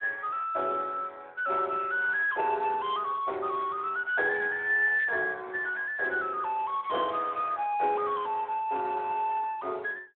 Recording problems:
phone line; 340 Hz to 3.5 kHz, Speex

